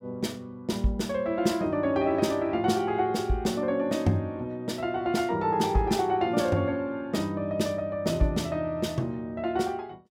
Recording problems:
none

